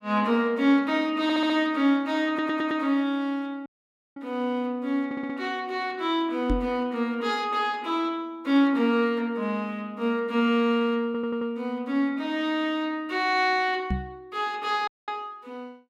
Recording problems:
stutter; 4 times, first at 1 s
dropout; at 3.5 s for 0.5 s and at 15 s
knock on the microphone; at 6.5 s and at 14 s; peak +3 dB vs average level

